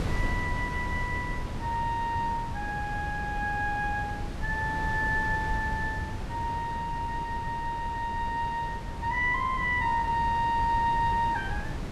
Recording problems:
wind on the microphone; below 240 Hz, SNR 6 dB

